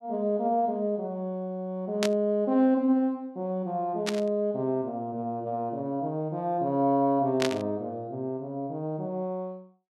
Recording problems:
burst of static; at 2 s, at 4 s and at 7.5 s; peak +2 dB vs average level

